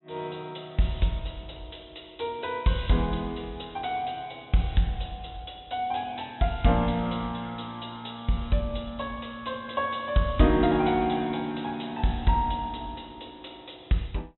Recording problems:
low-pass filter; nothing above 3.9 kHz

